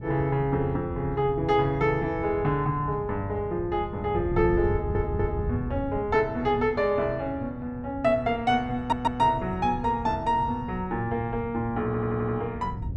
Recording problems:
wind noise; below 140 Hz, SNR 10 dB
stutter; at 4.5 s, at 9 s and at 12 s

